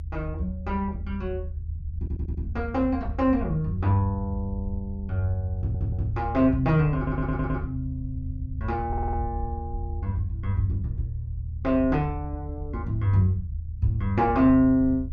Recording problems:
low-frequency rumble; below 80 Hz, strongest tone 78 Hz, SNR 8 dB
stutter; 4 times, first at 2 s

